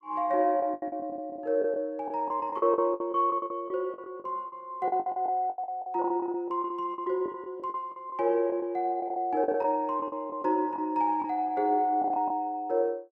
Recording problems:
lost packets; 15% of the sound replaced, filled with the last packet

